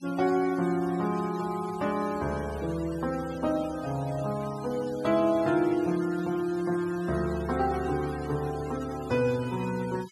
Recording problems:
denoising artefacts; signal-to-artefact ratio 18 dB

